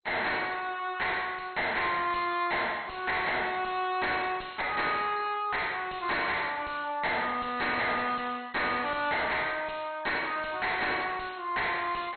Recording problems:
lossy codec; MP2, log-spectral distance 7 dB, nothing above 4.2 kHz
distorted audio; soft clipping, signal-to-distortion ratio 6 dB

